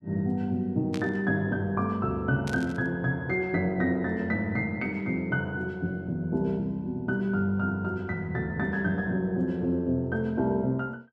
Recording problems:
burst of static; at 1 s and at 2.5 s; peak -6 dB vs average level

